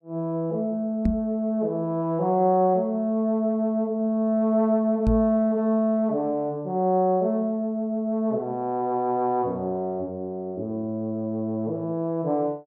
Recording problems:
knock on the microphone; at 1 s and at 5 s; peak +3 dB vs average level

